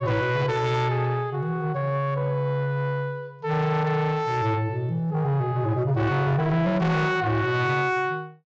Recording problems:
treble missing; nothing above 8 kHz
distorted audio; soft clipping, signal-to-distortion ratio 10 dB

